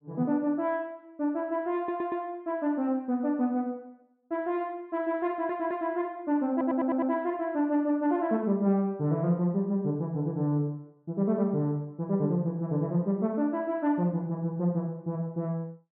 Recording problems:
stutter; at 2 s, at 5.5 s and at 6.5 s

